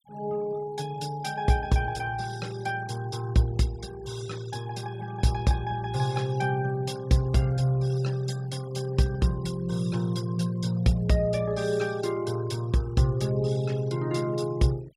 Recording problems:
noise reduction artefacts; signal-to-artefact ratio 21 dB

